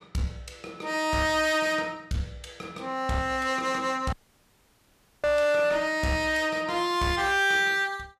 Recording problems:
distortion; hard clipping, uneven, signal-to-distortion ratio 11 dB
dropout; at 4 s for 1 s

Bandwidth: 14.5 kHz